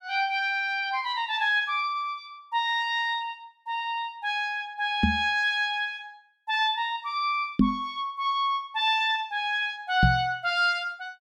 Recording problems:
microphone bump; at 5 s, at 7.5 s and at 10 s; peak +9 dB vs average level

